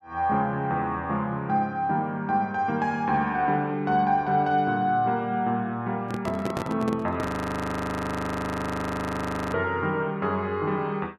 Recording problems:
microphone handling noise; from 6 to 7.5 s; peak 0 dB vs average level
frozen audio; at 7.5 s for 2.5 s

